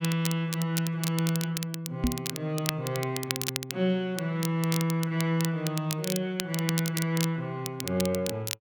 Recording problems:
crackle; vinyl, SNR 6 dB
knock on the microphone; at 2 s; peak +6 dB vs average level

